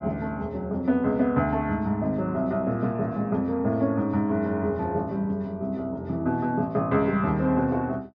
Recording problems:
low-pass filter; nothing above 6.7 kHz

